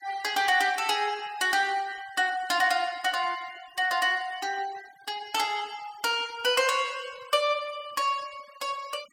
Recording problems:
denoising artefacts; signal-to-artefact ratio 21 dB

